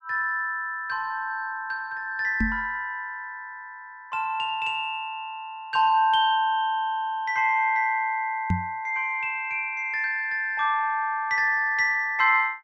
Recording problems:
knock on the microphone; at 2.5 s and at 8.5 s; peak +3 dB vs average level

